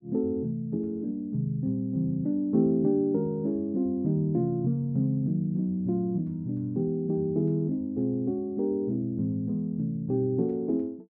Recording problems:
none

